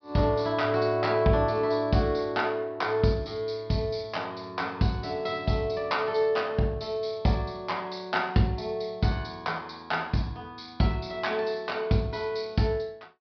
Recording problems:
low-pass filter; nothing above 5.5 kHz

